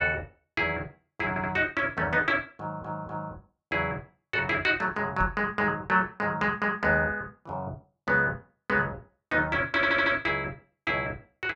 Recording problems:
stutter; at 1.5 s, at 2.5 s and at 10 s
microphone thump; at 5 s; peak 0 dB vs average level

